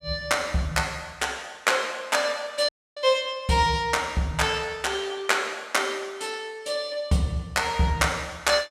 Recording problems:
audio cutting out; at 2.5 s

